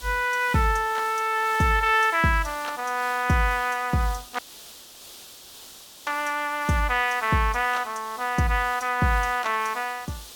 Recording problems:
background hiss; SNR 18 dB
dropout; at 4.5 s for 1.5 s

